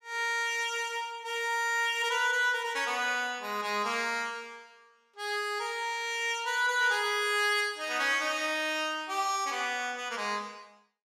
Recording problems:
none

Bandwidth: 15.5 kHz